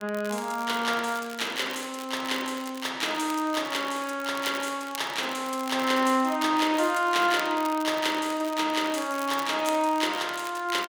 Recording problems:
crackling; vinyl, SNR 16 dB

